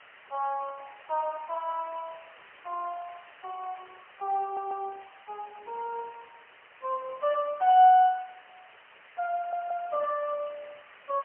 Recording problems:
phone line; 340 Hz to 3.7 kHz, AMR-NB, then MP3
hiss; SNR 23 dB
stutter; at 4.5 s and at 9.5 s

